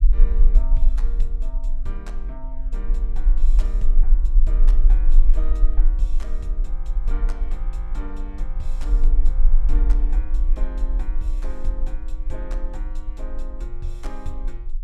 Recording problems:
low-frequency rumble; below 38 Hz, strongest tone 20 Hz, SNR -15 dB

